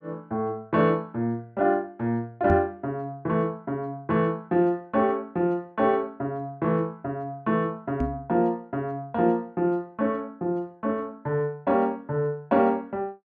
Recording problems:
knock on the microphone; at 2.5 s and at 8 s; peak +3 dB vs average level

